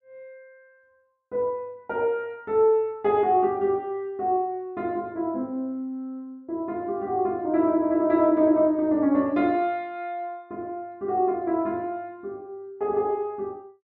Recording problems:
none

